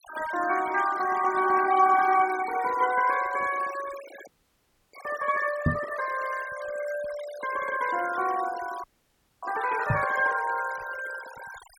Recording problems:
denoising artefacts; signal-to-artefact ratio 15 dB
frozen audio; at 4.5 s for 0.5 s and at 9 s for 0.5 s
knock on the microphone; at 5.5 s and at 10 s; peak +6 dB vs average level

